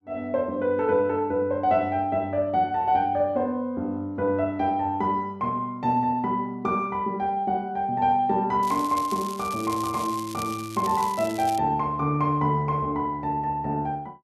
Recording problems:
crackle; from 8.5 to 12 s; loose cable, SNR 15 dB

